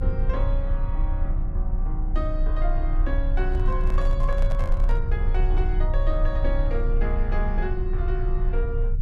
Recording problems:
rumble; below 44 Hz, strongest tone 30 Hz, SNR -7 dB
microphone handling noise; from 3.5 to 5 s; peak -2 dB vs average level

